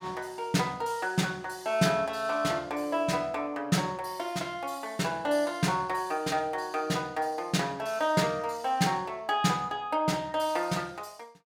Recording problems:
none

